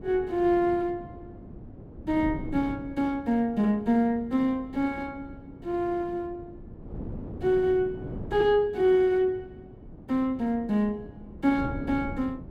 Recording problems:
wind noise; below 300 Hz, SNR 15 dB

